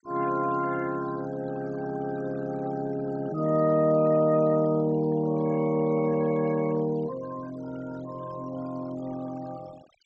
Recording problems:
treble missing; nothing above 8 kHz
noise reduction artefacts; signal-to-artefact ratio 20 dB

